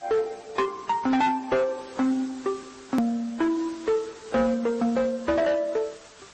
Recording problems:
codec artefacts; AAC, then MP3, log-spectral distance 6 dB, nothing above 15.1 kHz
distorted audio; hard clipping, signal-to-distortion ratio 10 dB
background hiss; SNR 21 dB
click at an edit; at 3 s

